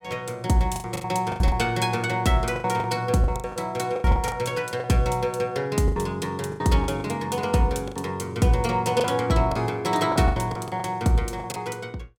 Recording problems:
packet loss; 12% of the sound replaced, filled with the last packet

